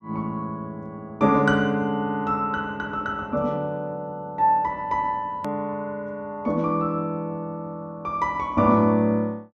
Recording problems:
click at an edit; at 5.5 s

